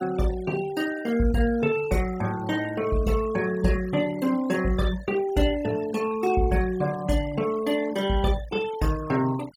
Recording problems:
denoising artefacts; signal-to-artefact ratio 18 dB

